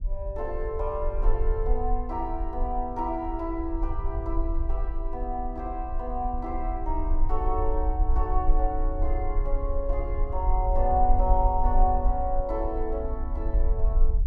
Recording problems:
rumble; below 46 Hz, strongest tone 24 Hz, SNR 0 dB

